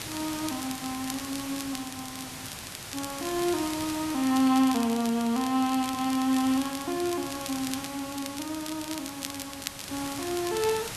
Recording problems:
background hiss; slope -1 dB per octave, SNR 9 dB
crackle; vinyl, SNR 12 dB

